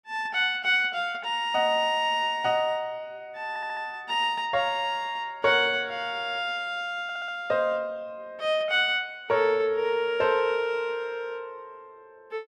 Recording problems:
audio stuttering; at 3.5 s and at 7 s

